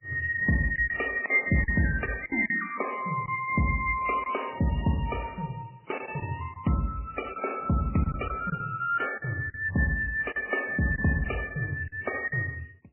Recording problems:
codec artefacts; MP3, then MP3, log-spectral distance 6 dB
lost packets; 6% of the sound replaced, filled with silence

